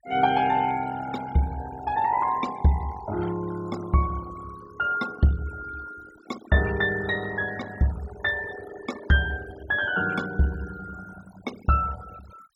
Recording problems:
noise reduction artefacts; signal-to-artefact ratio 18 dB

